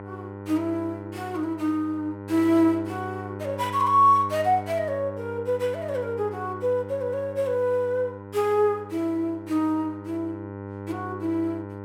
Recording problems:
hum; 50 Hz, harmonics up to 1.9 kHz, SNR 12 dB

